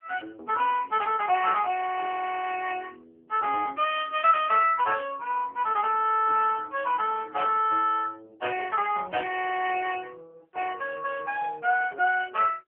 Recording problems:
telephone audio; 320 Hz to 3 kHz, AMR-NB

